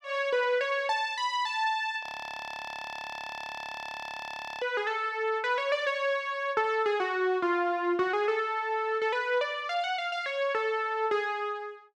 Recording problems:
audio freezing; at 2 s for 2.5 s

